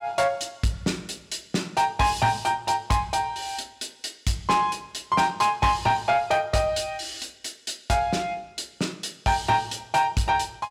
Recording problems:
distortion; soft clipping, signal-to-distortion ratio 11 dB

